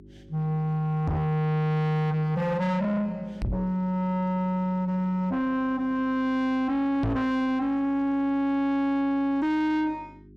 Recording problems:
distortion; soft clipping, signal-to-distortion ratio 6 dB
hum; 50 Hz, harmonics up to 400 Hz, SNR 25 dB
microphone bump; at 1 s, at 3.5 s and at 7 s; peak +4 dB vs average level

